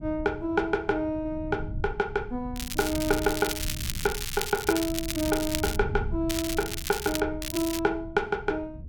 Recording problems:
low-frequency rumble; below 120 Hz, SNR 10 dB
crackle; from 2.5 to 6 s, at 6.5 s and at 7.5 s; loose cable, SNR 5 dB

